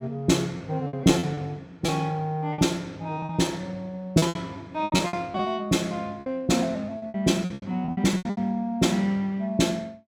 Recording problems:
packet loss; 12% of the sound replaced, filled with repeated pitch periods

